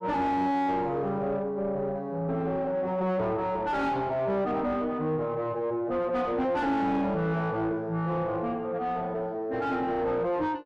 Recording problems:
distortion; soft clipping, signal-to-distortion ratio 7 dB

